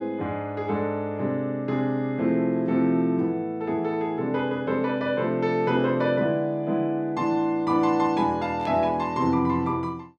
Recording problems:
burst of static; at 8.5 s; peak -15 dB vs average level

